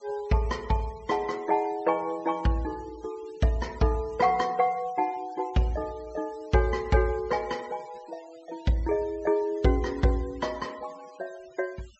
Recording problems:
treble cut off; nothing above 7.8 kHz
noise reduction artefacts; signal-to-artefact ratio 23 dB

